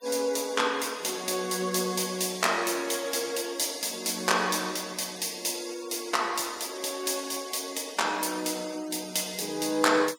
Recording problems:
noise reduction artefacts; signal-to-artefact ratio 17 dB

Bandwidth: 17 kHz